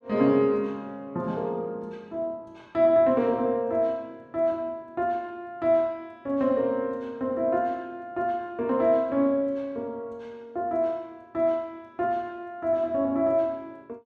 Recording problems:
none

